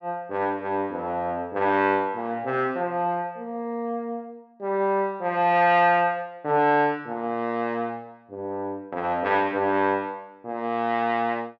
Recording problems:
none

